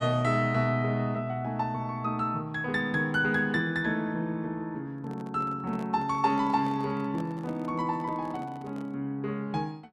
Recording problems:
handling noise; from 5 to 9 s; peak -10 dB vs average level

